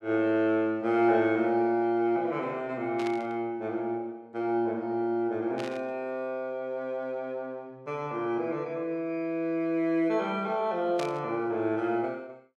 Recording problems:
static burst; at 3 s, at 5.5 s and at 11 s; peak -7 dB vs average level

